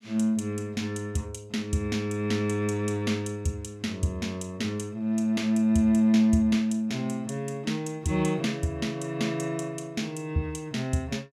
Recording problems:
none

